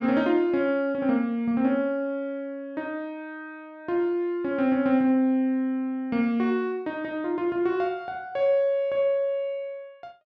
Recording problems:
none

